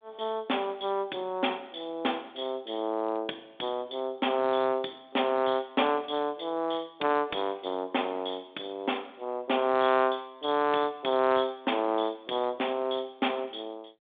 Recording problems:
phone line; 280 Hz to 3.6 kHz, G.726

